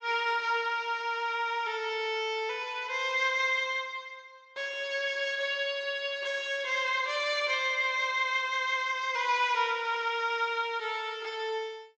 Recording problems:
treble cut off; nothing above 8 kHz

